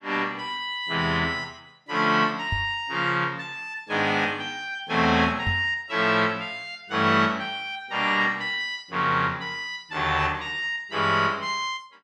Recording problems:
microphone bump; at 2.5 s and at 5.5 s; peak -1 dB vs average level

